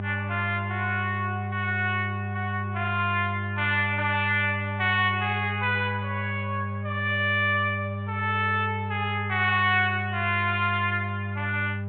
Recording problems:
low-pass filter; nothing above 4 kHz
electrical hum; 50 Hz, harmonics up to 800 Hz, SNR 6 dB

